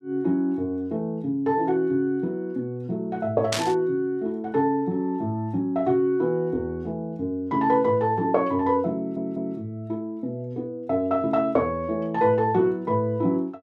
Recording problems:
burst of static; at 3.5 s; peak +3 dB vs average level
audio stuttering; at 9 s

